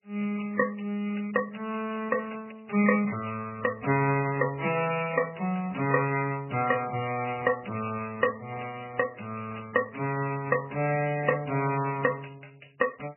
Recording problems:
codec artefacts; MP3, then MP3, log-spectral distance 9 dB, nothing above 2.7 kHz

